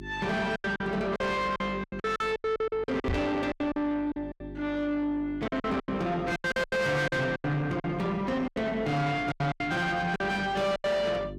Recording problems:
distorted audio; soft clipping, signal-to-distortion ratio 5 dB
hum; 50 Hz, harmonics up to 550 Hz, SNR 15 dB
lost packets; 15% of the sound replaced, filled with silence
microphone bump; at 3 s; peak +3 dB vs average level

